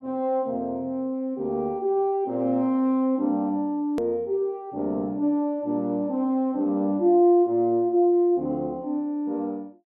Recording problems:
edit click; at 4 s

